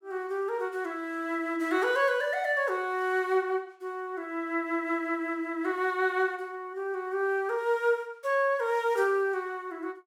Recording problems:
none

